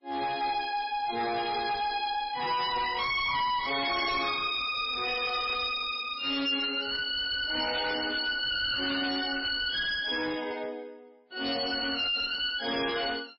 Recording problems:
lossy codec; MP3, log-spectral distance 7 dB, nothing above 5 kHz
distorted audio; hard clipping, uneven, signal-to-distortion ratio 6 dB
burst of static; 4 times, first at 3 s; peak -13 dB vs average level

